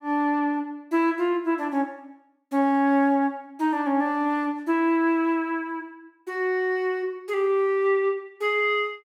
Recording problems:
none

